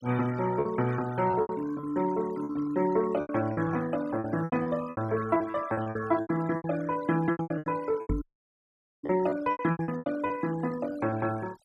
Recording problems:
denoising artefacts; signal-to-artefact ratio 17 dB
packet loss; 17% of the sound replaced, filled with repeated pitch periods
knock on the microphone; at 8 s; peak +2 dB vs average level
dropout; at 8 s for 1 s

